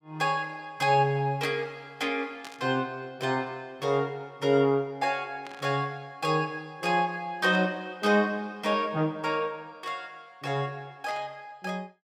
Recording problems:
burst of static; 4 times, first at 2.5 s; peak -10 dB vs average level

